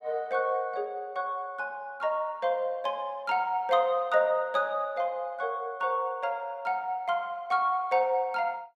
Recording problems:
none

